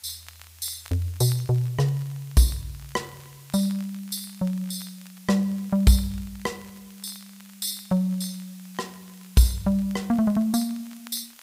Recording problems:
hiss; slope +2 dB per octave, SNR 24 dB
crackle; vinyl, SNR 27 dB

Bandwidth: 15.5 kHz